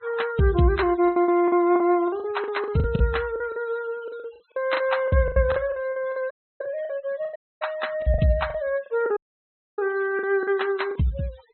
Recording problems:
low-pass filter; nothing above 4.1 kHz
noise reduction artefacts; signal-to-artefact ratio 21 dB
lost packets; 14% of the sound replaced, filled with the last packet
audio cutting out; at 6.5 s, at 7.5 s and at 9 s for 0.5 s

